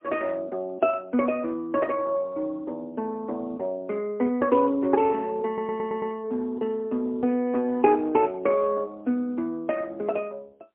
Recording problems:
telephone audio; 220 Hz to 3.1 kHz, AMR-NB, then MP3
audio stuttering; at 5.5 s

